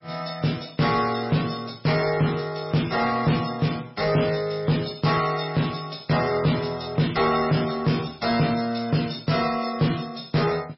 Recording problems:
lossy compression; MP3, log-spectral distance 7 dB, nothing above 5.5 kHz
distorted audio; soft clipping, signal-to-distortion ratio 11 dB

